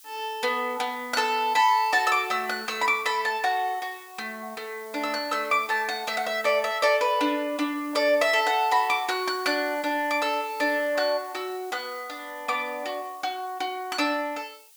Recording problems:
hiss; slope +6 dB per octave, SNR 22 dB

